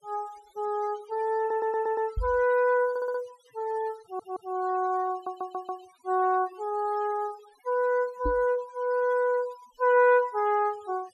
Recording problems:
noise reduction artefacts; signal-to-artefact ratio 23 dB
stutter; 4 times, first at 1.5 s
knock on the microphone; at 2 s and at 8.5 s; peak -1 dB vs average level

